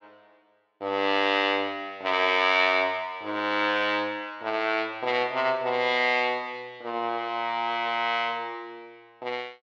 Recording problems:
none

